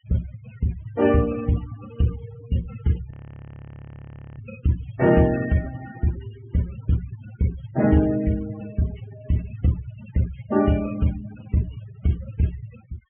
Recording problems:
treble cut off; nothing above 3.2 kHz
denoising artefacts; signal-to-artefact ratio 16 dB
frozen audio; at 3 s for 1.5 s

